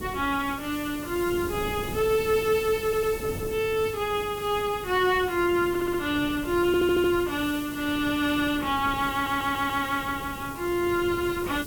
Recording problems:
electrical hum; 50 Hz, harmonics up to 500 Hz, SNR 23 dB
hiss; slope +2 dB per octave, SNR 16 dB
wind on the microphone; below 370 Hz, SNR 15 dB
audio stuttering; 4 times, first at 3 s

